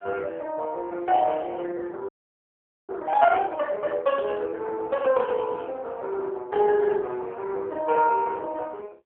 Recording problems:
telephone audio; 320 Hz to 3 kHz, AMR-NB
frozen audio; at 2 s for 1 s

